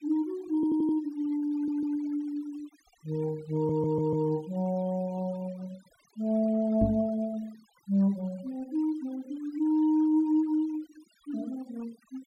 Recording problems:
denoising artefacts; signal-to-artefact ratio 25 dB
audio stuttering; at 0.5 s, at 1.5 s and at 3.5 s
microphone thump; at 7 s; peak +5 dB vs average level

